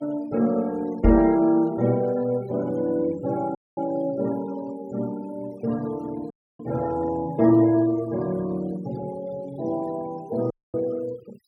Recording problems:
noise reduction artefacts; signal-to-artefact ratio 22 dB
microphone bump; at 1 s; peak +6 dB vs average level
dropout; at 3.5 s, at 6.5 s and at 11 s

